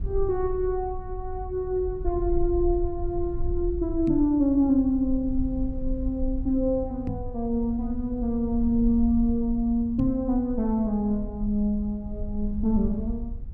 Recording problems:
low-frequency rumble; below 60 Hz, SNR 9 dB
microphone thump; at 4 s, at 7 s and at 10 s; peak 0 dB vs average level

